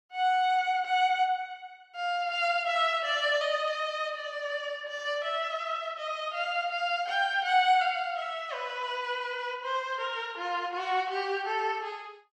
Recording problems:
none

